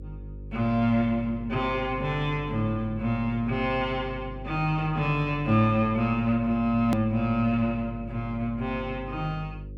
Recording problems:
mains hum; 50 Hz, harmonics up to 550 Hz, SNR 14 dB
edit click; at 7 s

